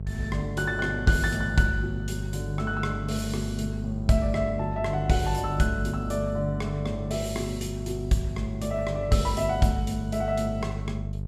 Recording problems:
hum; 50 Hz, harmonics up to 450 Hz, SNR 5 dB

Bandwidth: 14.5 kHz